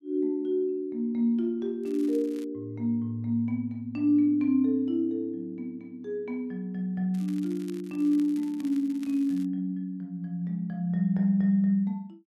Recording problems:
crackling; at 2 s and from 7 to 9.5 s; loose cable, SNR 26 dB

